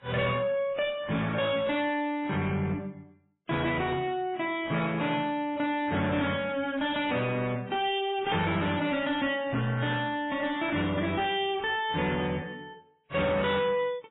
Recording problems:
lossy compression; MP3, then AAC, log-spectral distance 3 dB, nothing above 3.6 kHz
distorted audio; soft clipping, signal-to-distortion ratio 11 dB

